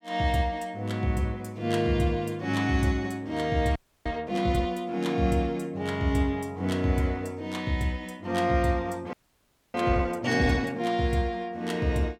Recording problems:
audio freezing; at 4 s and at 9 s for 0.5 s

